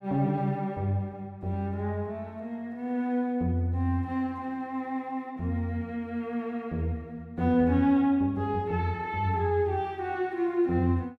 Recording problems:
none

